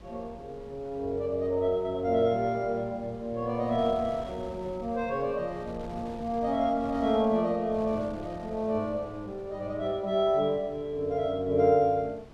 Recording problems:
wind noise; below 450 Hz, SNR 19 dB

